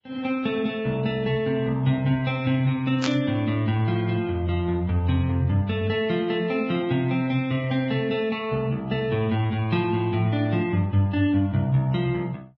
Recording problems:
codec artefacts; Vorbis, log-spectral distance 2 dB
static burst; at 3 s; peak 0 dB vs average level

